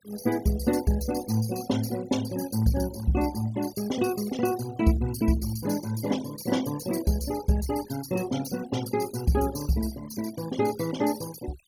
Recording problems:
denoising artefacts; signal-to-artefact ratio 14 dB

